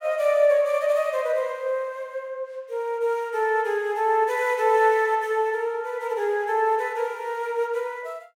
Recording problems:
none

